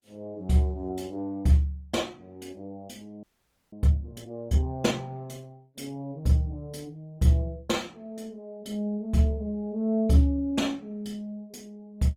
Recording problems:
lossy compression; Opus, log-spectral distance 2 dB
frozen audio; at 3 s

